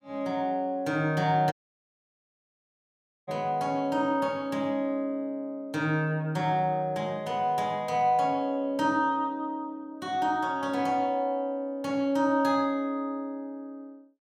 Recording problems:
audio cutting out; at 1.5 s for 2 s

